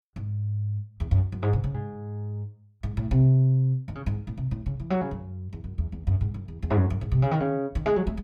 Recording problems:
none

